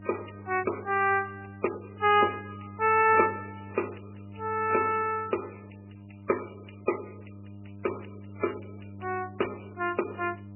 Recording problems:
codec artefacts; MP3, then MP3, log-spectral distance 10 dB, nothing above 2.5 kHz
hum; 50 Hz, harmonics up to 700 Hz, SNR 17 dB

